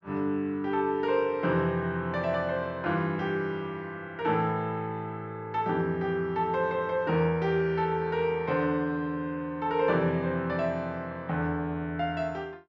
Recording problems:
none

